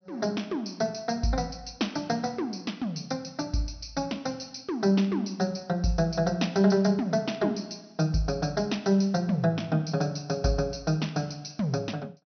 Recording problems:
treble missing; nothing above 6.1 kHz

